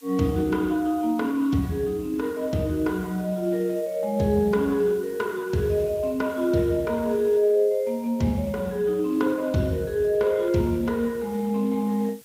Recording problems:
lossy compression; Speex, log-spectral distance 2 dB
hiss; slope +2 dB per octave, SNR 25 dB

